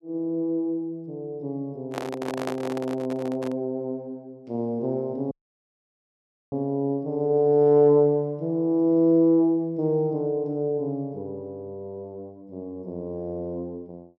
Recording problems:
microphone handling noise; from 2 to 3.5 s; peak -2 dB vs average level
dropout; at 5.5 s for 1 s

